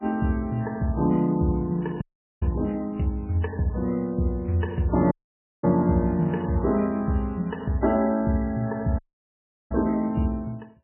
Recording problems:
lossy codec; MP3, log-spectral distance 3 dB, nothing above 2.9 kHz
dropout; at 2 s, at 5 s for 0.5 s and at 9 s for 0.5 s

